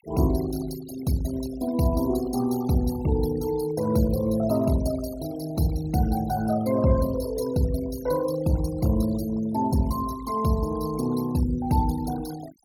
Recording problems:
denoising artefacts; signal-to-artefact ratio 15 dB

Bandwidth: 17.5 kHz